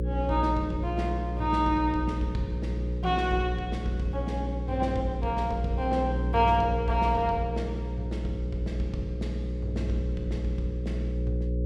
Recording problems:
hum; 60 Hz, harmonics up to 540 Hz, SNR 2 dB

